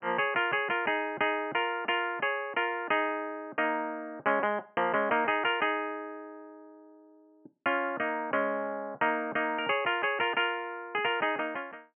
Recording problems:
low-pass filter; nothing above 3.2 kHz

